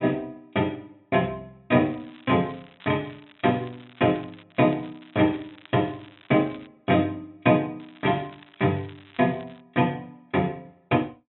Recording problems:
treble missing; nothing above 3.8 kHz
crackling; from 2 to 4.5 s, from 4.5 to 6.5 s and from 8 to 9.5 s; loose cable, SNR 26 dB

